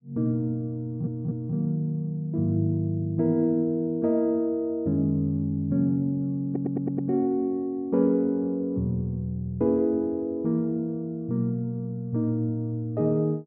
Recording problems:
stutter; at 1 s and at 6.5 s

